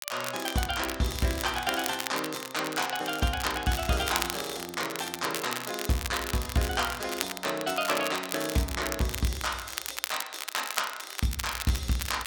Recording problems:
crackling; vinyl, SNR 5 dB

